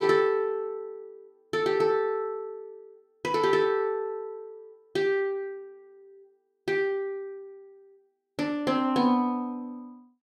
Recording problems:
none

